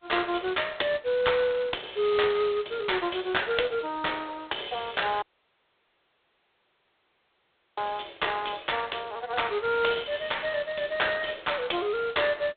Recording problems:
telephone audio; 300 Hz to 3.7 kHz, G.726
audio cutting out; at 5 s for 2.5 s

